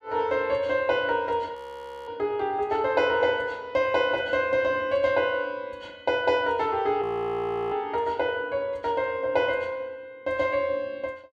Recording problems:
frozen audio; at 1.5 s for 0.5 s and at 7 s for 0.5 s

